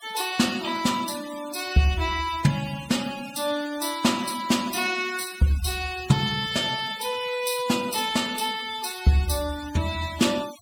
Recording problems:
denoising artefacts; signal-to-artefact ratio 15 dB

